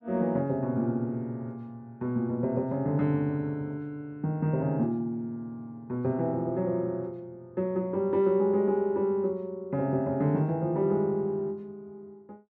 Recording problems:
none

